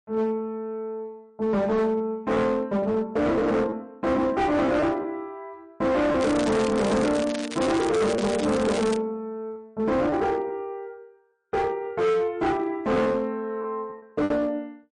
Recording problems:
codec artefacts; MP3, log-spectral distance 2 dB
distorted audio; hard clipping, signal-to-distortion ratio 8 dB
packet loss; 4% of the sound replaced, filled with repeated pitch periods
crackling; from 6 to 9 s; loose cable, SNR 10 dB

